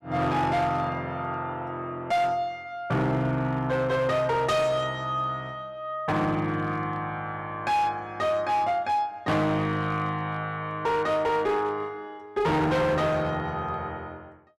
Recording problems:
distorted audio; hard clipping, signal-to-distortion ratio 10 dB

